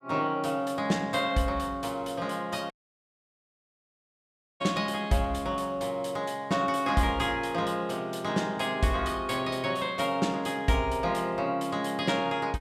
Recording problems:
dropout; at 2.5 s for 2 s

